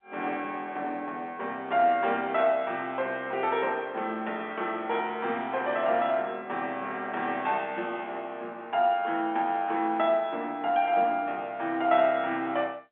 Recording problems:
phone line; 240 Hz to 3.6 kHz, G.711

